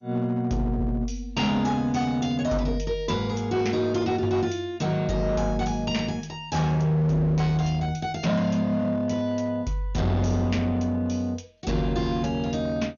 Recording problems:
lossy codec; MP2, log-spectral distance 2 dB, nothing above 6.7 kHz
distortion; hard clipping, signal-to-distortion ratio 11 dB

